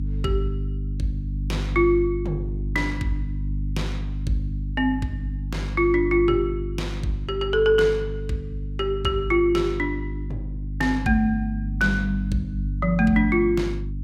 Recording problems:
electrical hum; 50 Hz, harmonics up to 300 Hz, SNR 6 dB

